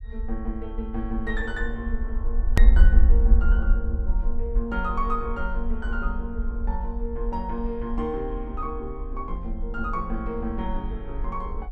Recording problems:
low-frequency rumble; below 54 Hz, SNR -4 dB
hard cut with a click; at 2.5 s

